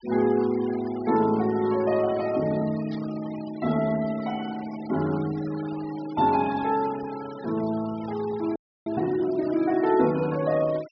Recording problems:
treble cut off; nothing above 5.5 kHz
denoising artefacts; signal-to-artefact ratio 18 dB
burst of static; at 3 s; peak -18 dB vs average level
audio freezing; at 8.5 s

